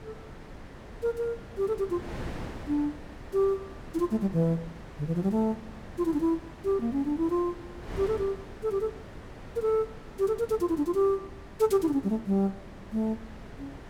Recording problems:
wind noise; below 670 Hz, SNR 15 dB

